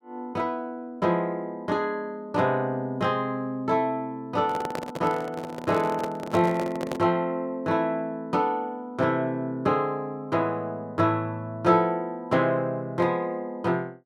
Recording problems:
microphone handling noise; from 4.5 to 7 s; peak 0 dB vs average level

